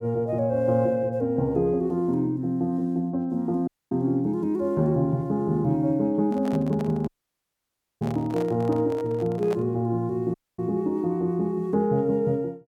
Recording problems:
audio cutting out; at 3.5 s, at 7 s for 1 s and at 10 s
handling noise; from 6 to 9.5 s; peak -6 dB vs average level

